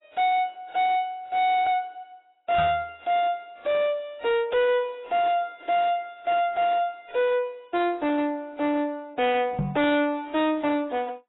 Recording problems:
codec artefacts; AAC, log-spectral distance 2 dB, nothing above 3.5 kHz
distortion; soft clipping, signal-to-distortion ratio 7 dB
knock on the microphone; at 2.5 s and at 9.5 s; peak +1 dB vs average level

